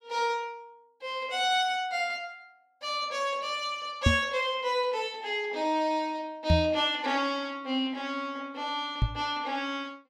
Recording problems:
microphone thump; at 4 s, at 6.5 s and at 9 s; peak +9 dB vs average level

